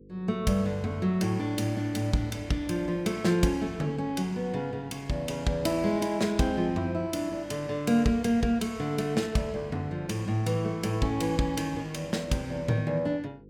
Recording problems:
hum; 50 Hz, harmonics up to 500 Hz, SNR 22 dB

